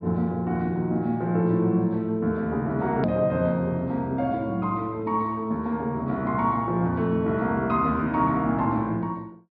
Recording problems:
treble cut off; nothing above 5.5 kHz
click at an edit; at 3 s

